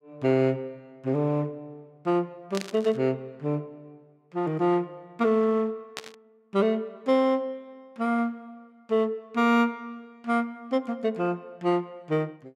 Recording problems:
static burst; at 2.5 s and at 6 s; peak -4 dB vs average level

